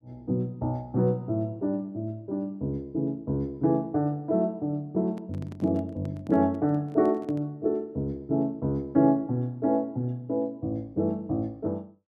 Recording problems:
microphone handling noise; from 5 to 7.5 s; peak -11 dB vs average level

